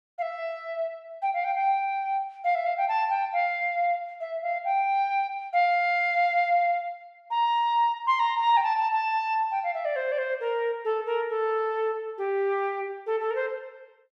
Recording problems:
none

